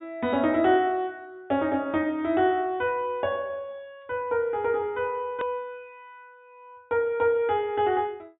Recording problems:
treble cut off; nothing above 4 kHz
click at an edit; at 5.5 s

